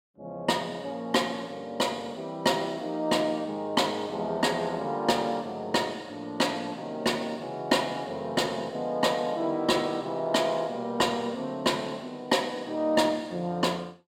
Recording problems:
none

